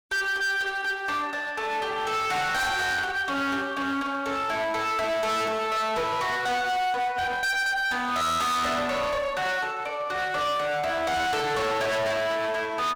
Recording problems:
distortion; hard clipping, uneven, signal-to-distortion ratio 5 dB
burst of static; at 3 s; peak -8 dB vs average level

